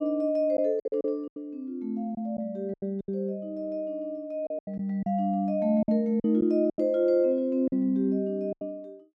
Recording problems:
lost packets; 9% of the sound replaced, filled with silence

